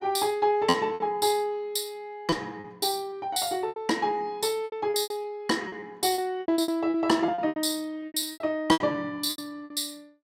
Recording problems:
packet loss; 14% of the sound replaced, filled with repeated pitch periods

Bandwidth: 16 kHz